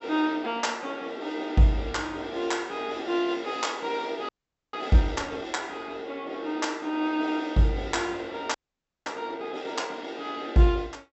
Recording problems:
low-pass filter; nothing above 7.8 kHz
frozen audio; at 4.5 s and at 8.5 s for 0.5 s

